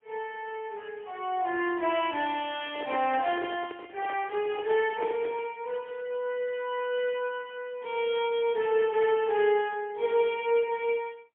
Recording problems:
phone line; 280 Hz to 3.4 kHz, AMR-NB, then MP3
microphone handling noise; from 2.5 to 5.5 s; peak -8 dB vs average level

